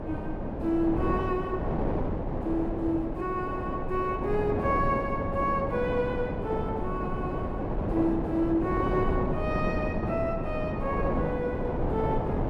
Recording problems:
wind on the microphone; below 530 Hz, SNR 1 dB

